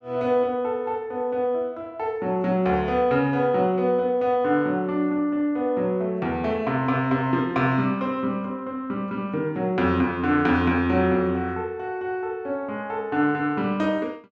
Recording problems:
none

